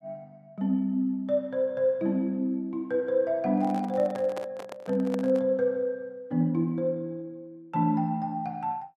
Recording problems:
microphone handling noise; from 3.5 to 5.5 s; peak -5 dB vs average level

